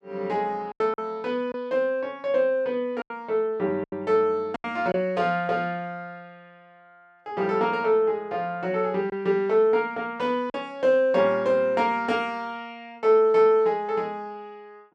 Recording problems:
lost packets; 3% of the sound replaced, filled with silence

